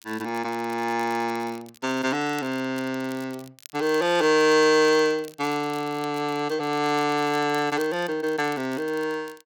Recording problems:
crackle; vinyl, SNR 23 dB

